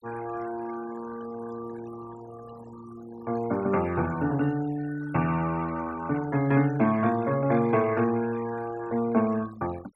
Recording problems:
denoising artefacts; signal-to-artefact ratio 18 dB

